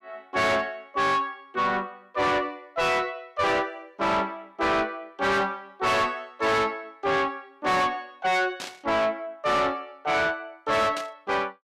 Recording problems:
distorted audio; soft clipping, signal-to-distortion ratio 6 dB
burst of static; at 8.5 s and at 11 s; peak -5 dB vs average level

